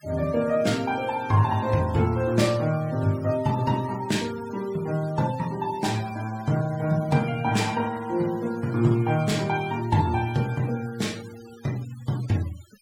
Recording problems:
noise reduction artefacts; signal-to-artefact ratio 20 dB

